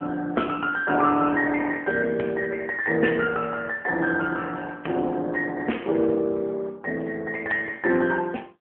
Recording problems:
phone line; 220 Hz to 3.1 kHz, AMR-NB

